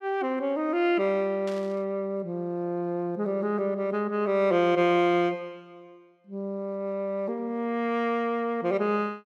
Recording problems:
burst of static; at 1.5 s; peak -11 dB vs average level

